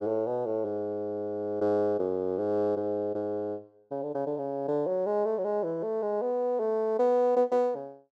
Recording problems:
none

